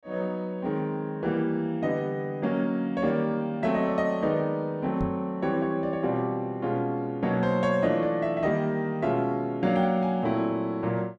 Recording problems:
knock on the microphone; at 5 s; peak -1 dB vs average level

